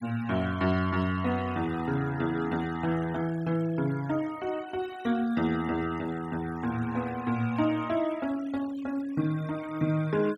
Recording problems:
noise reduction artefacts; signal-to-artefact ratio 19 dB

